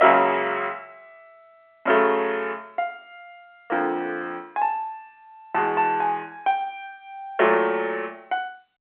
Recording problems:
telephone audio; 240 Hz to 3.3 kHz, G.711

